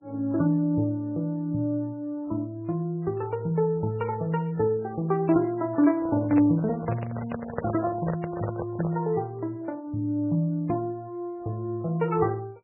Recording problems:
lossy compression; MP3, log-spectral distance 2 dB, nothing above 2.3 kHz
microphone handling noise; from 6 to 9 s; peak 0 dB vs average level

